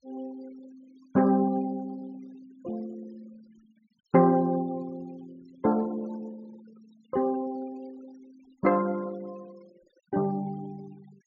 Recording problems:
low-pass filter; nothing above 7.1 kHz
noise reduction artefacts; signal-to-artefact ratio 27 dB

